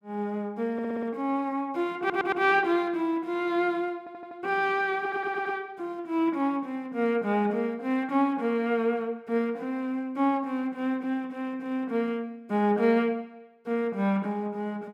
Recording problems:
stutter; 4 times, first at 0.5 s

